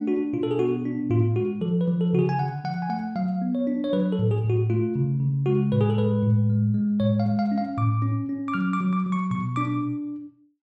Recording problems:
none

